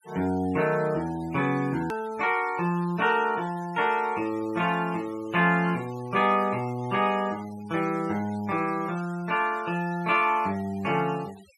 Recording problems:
noise reduction artefacts; signal-to-artefact ratio 21 dB
click at an edit; at 2 s

